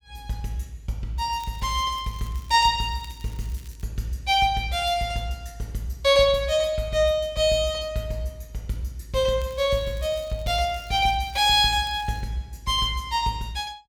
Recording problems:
crackle; from 1.5 to 4 s and from 9.5 to 12 s; loose cable, SNR 26 dB

